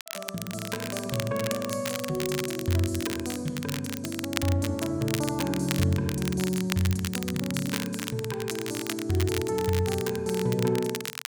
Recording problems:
crackle; vinyl, SNR 7 dB

